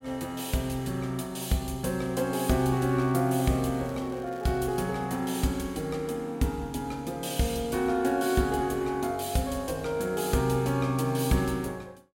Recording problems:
crackle; from 2.5 to 5 s; loose cable, SNR 26 dB

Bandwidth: 16 kHz